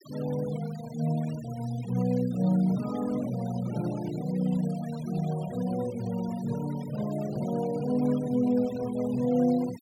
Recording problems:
noise reduction artefacts; signal-to-artefact ratio 18 dB

